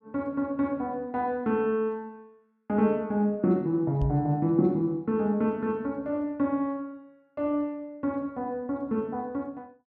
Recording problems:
microphone thump; at 4 s; peak +1 dB vs average level

